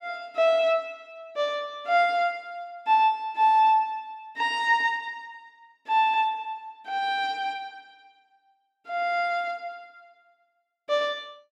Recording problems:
none

